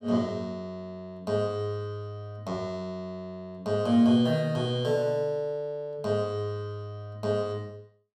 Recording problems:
none

